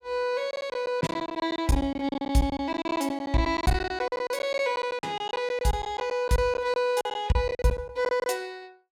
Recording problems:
packet loss; 16% of the sound replaced, filled with silence

